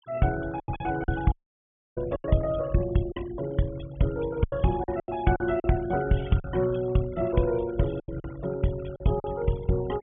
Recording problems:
low-pass filter; nothing above 3.4 kHz
noise reduction artefacts; signal-to-artefact ratio 19 dB
packet loss; 8% of the sound replaced, filled with silence
audio cutting out; at 1.5 s for 0.5 s

